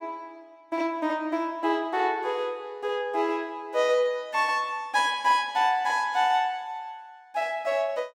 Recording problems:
none

